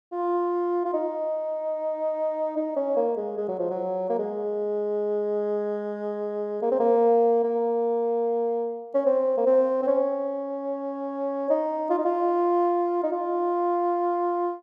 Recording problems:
none

